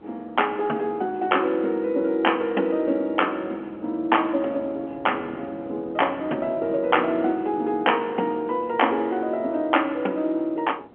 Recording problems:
telephone audio; 240 Hz to 3.3 kHz, G.711
wind on the microphone; below 510 Hz, SNR 19 dB

